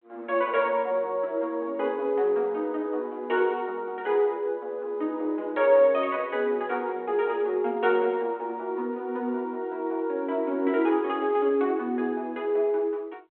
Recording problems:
phone line; 220 Hz to 3.3 kHz, G.726

